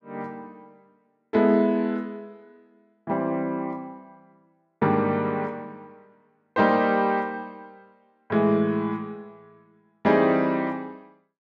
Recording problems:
none

